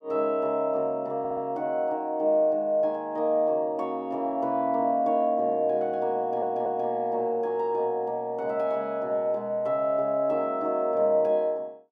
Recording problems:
audio stuttering; at 1 s and at 6 s

